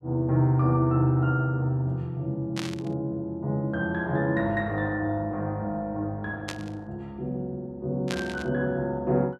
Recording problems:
burst of static; at 2.5 s, at 6.5 s and at 8 s; peak -1 dB vs average level

